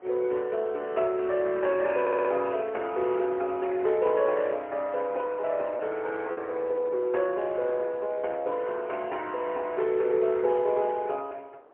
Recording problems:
telephone audio; 300 Hz to 3.4 kHz, AMR-NB, then MP3
wind noise; below 870 Hz, SNR 25 dB
lost packets; 0.6% of the sound replaced, filled with repeated pitch periods
stutter; at 2 s

